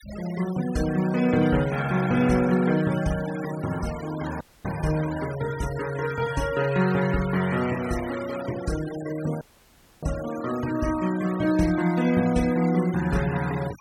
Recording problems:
denoising artefacts; signal-to-artefact ratio 15 dB
dropout; at 4.5 s and at 9.5 s for 0.5 s

